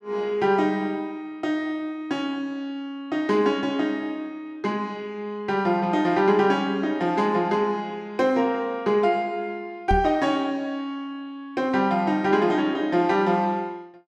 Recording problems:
microphone bump; at 10 s; peak +2 dB vs average level

